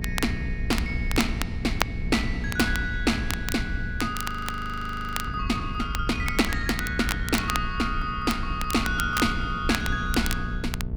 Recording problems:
hum; 60 Hz, harmonics up to 660 Hz, SNR 9 dB
rumble; below 86 Hz, SNR 7 dB
crackling; vinyl, SNR 7 dB
frozen audio; at 4 s for 1 s

